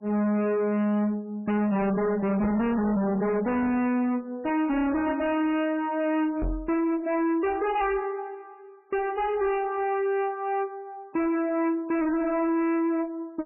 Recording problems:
lossy codec; MP3, log-spectral distance 2 dB, nothing above 2.5 kHz
distortion; hard clipping, signal-to-distortion ratio 7 dB
microphone bump; at 2.5 s and at 6.5 s; peak -1 dB vs average level

